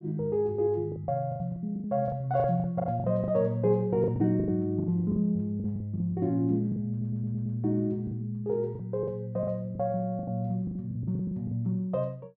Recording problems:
packet loss; 14% of the sound replaced, filled with the last packet
audio stuttering; at 7 s

